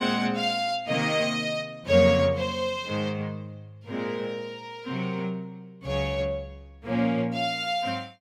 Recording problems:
none

